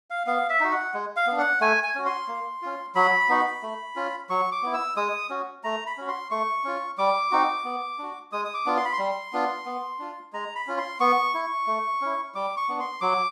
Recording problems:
none

